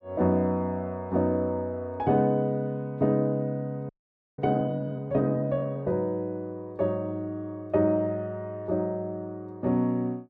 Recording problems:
frozen audio; at 4 s

